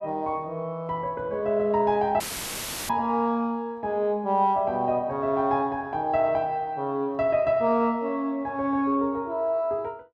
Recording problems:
dropout; at 2 s for 0.5 s; filled with static

